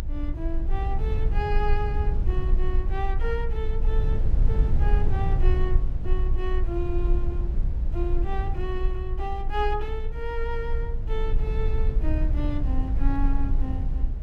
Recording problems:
rumble; below 58 Hz, strongest tone 24 Hz, SNR -6 dB

